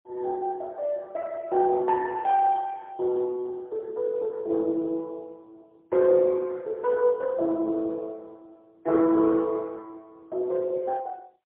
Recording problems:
telephone audio; 260 Hz to 2.6 kHz, AMR-NB, then MP3

